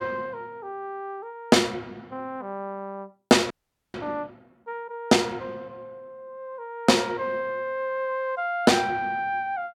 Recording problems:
frozen audio; at 3.5 s

